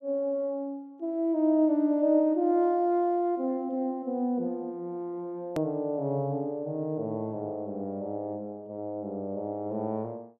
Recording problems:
edit click; at 5.5 s

